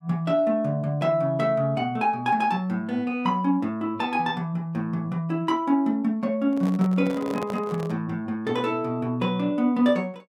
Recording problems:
handling noise; from 6.5 to 8 s; peak -5 dB vs average level

